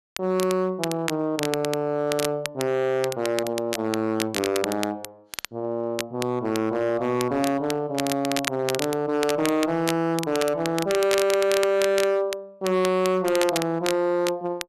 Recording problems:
distortion; hard clipping, signal-to-distortion ratio 10 dB
crackling; vinyl, SNR 9 dB

